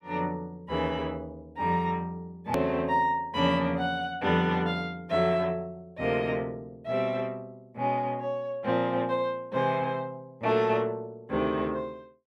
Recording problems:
click at an edit; at 2.5 s

